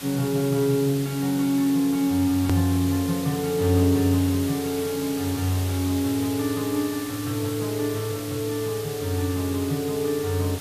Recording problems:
hiss; slope -1 dB per octave, SNR 11 dB
edit click; at 2.5 s

